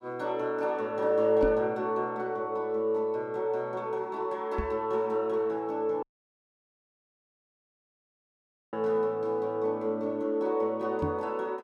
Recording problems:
knock on the microphone; at 1.5 s, at 4.5 s and at 11 s; peak +1 dB vs average level
dropout; at 6 s for 2.5 s

